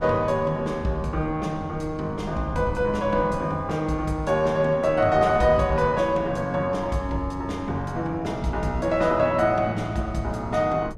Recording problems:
wind noise; below 240 Hz, SNR 15 dB

